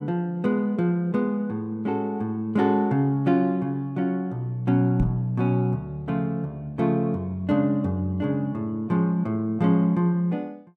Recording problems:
microphone bump; at 5 s; peak +1 dB vs average level

